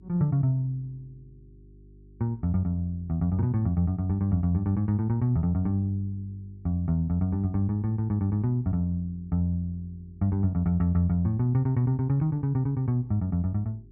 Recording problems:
hum; 50 Hz, harmonics up to 400 Hz, SNR 27 dB

